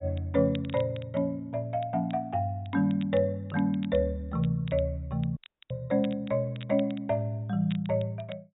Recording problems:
treble missing; nothing above 4 kHz
crackling; vinyl, SNR 22 dB
dropout; at 5.5 s

